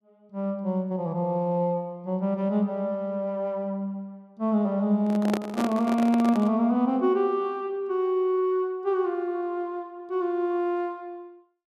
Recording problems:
microphone handling noise; from 5 to 6.5 s; peak +1 dB vs average level

